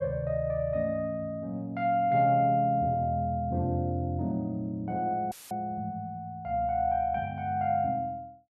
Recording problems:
dropout; at 5.5 s; filled with static

